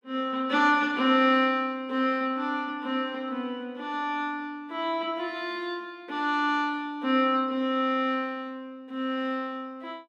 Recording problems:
none

